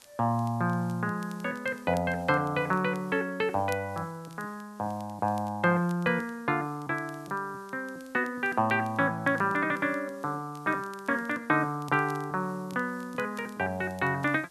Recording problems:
background hiss; SNR 27 dB
crackle; vinyl, SNR 27 dB

